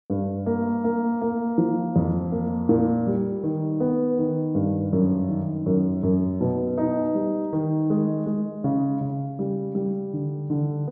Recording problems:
treble missing; nothing above 8 kHz

